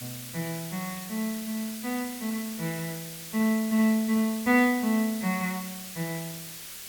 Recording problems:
background hiss; SNR 10 dB

